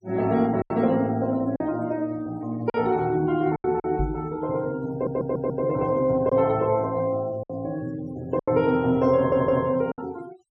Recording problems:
denoising artefacts; signal-to-artefact ratio 26 dB
packet loss; 5% of the sound replaced, filled with silence
knock on the microphone; at 4 s; peak 0 dB vs average level
audio stuttering; at 5 s and at 9 s

